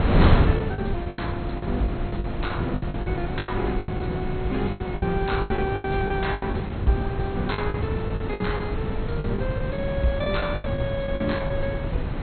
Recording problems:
lossy compression; MP2, log-spectral distance 2 dB, nothing above 4.2 kHz
electrical hum; 50 Hz, harmonics up to 750 Hz, SNR 11 dB
background hiss; SNR 25 dB
wind noise; below 280 Hz, SNR -1 dB
packet loss; 14% of the sound replaced, filled with the last packet

